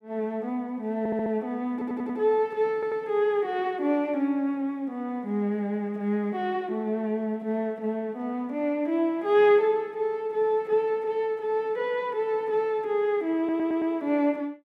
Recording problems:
stutter; 4 times, first at 1 s

